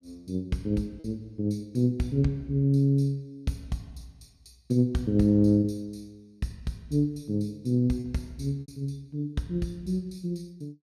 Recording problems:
packet loss; 2% of the sound replaced, filled with repeated pitch periods

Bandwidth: 14.5 kHz